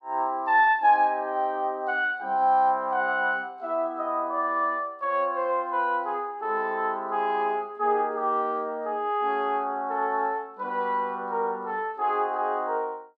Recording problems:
none

